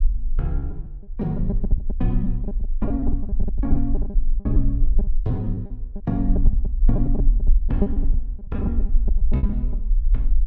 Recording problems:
rumble; below 44 Hz, strongest tone 20 Hz, SNR -3 dB
lost packets; 13% of the sound replaced, filled with repeated pitch periods

